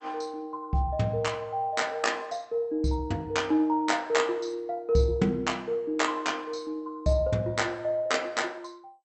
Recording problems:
lossy compression; MP2, log-spectral distance 2 dB, nothing above 8 kHz

